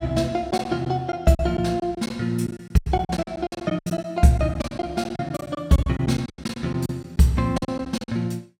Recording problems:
packet loss; 15% of the sound replaced, filled with silence

